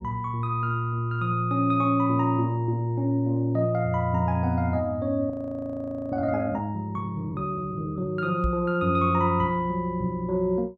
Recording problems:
frozen audio; at 5.5 s for 1 s
knock on the microphone; at 8.5 s; peak +1 dB vs average level

